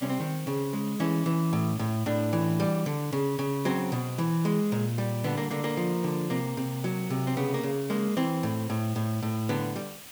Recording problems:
background hiss; slope 0 dB per octave, SNR 14 dB

